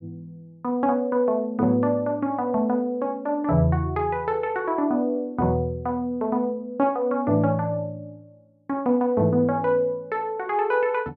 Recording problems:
none

